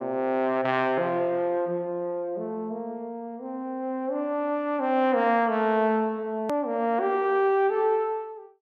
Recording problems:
edit click; at 6.5 s

